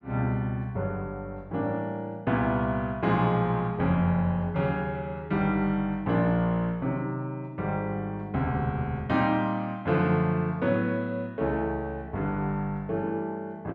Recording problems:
none

